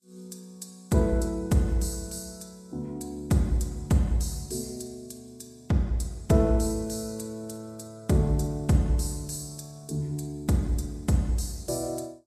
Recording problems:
lossy compression; Vorbis, log-spectral distance 3 dB, nothing above 13.1 kHz

